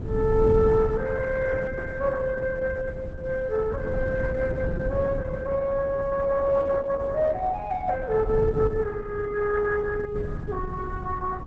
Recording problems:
codec artefacts; Opus, log-spectral distance 3 dB, nothing above 7.8 kHz
wind noise; below 180 Hz, SNR 8 dB

